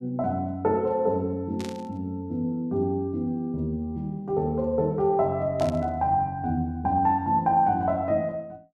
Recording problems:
static burst; at 1.5 s and at 5.5 s; peak -10 dB vs average level

